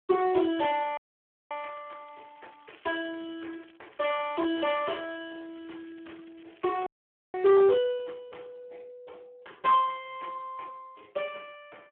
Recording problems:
telephone audio; 280 Hz to 2.8 kHz, Speex
distortion; hard clipping, uneven, signal-to-distortion ratio 11 dB
audio freezing; at 1 s for 0.5 s and at 7 s
crackle; from 1.5 to 4 s and from 4 to 7 s; loose cable, SNR 29 dB

